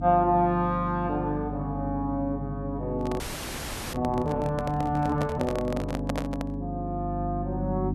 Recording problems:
electrical hum; 50 Hz, harmonics up to 300 Hz, SNR 5 dB
microphone handling noise; from 3 to 6.5 s; peak +2 dB vs average level
frozen audio; at 3 s for 0.5 s

